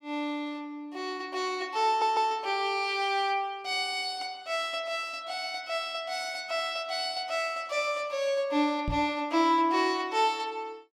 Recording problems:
audio stuttering; at 2 s
microphone bump; at 9 s; peak 0 dB vs average level

